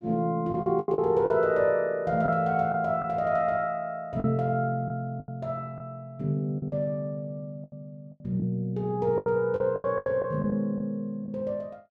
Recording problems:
packet loss; 9% of the sound replaced, filled with the last packet

